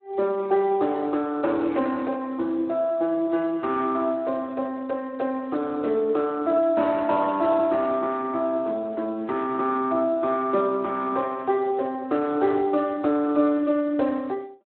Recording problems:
phone line; 220 Hz to 4 kHz, Speex

